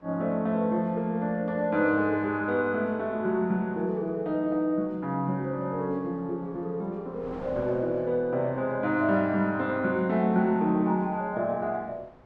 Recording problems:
wind noise; below 880 Hz, SNR 24 dB

